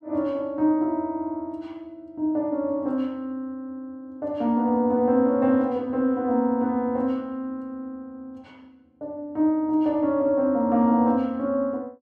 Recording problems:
none

